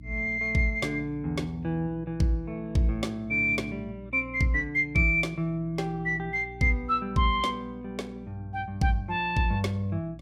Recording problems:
electrical hum; 60 Hz, harmonics up to 300 Hz, SNR 19 dB

